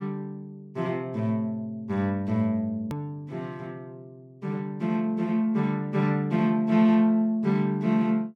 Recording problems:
hard cut with a click; at 3 s

